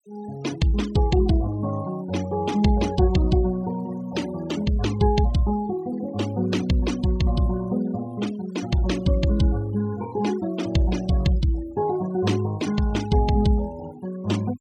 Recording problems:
denoising artefacts; signal-to-artefact ratio 17 dB

